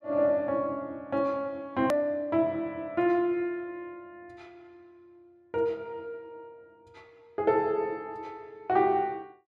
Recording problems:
click at an edit; at 2 s

